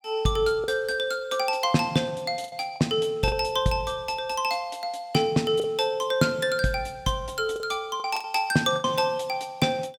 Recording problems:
lost packets; 5% of the sound replaced, filled with the last packet

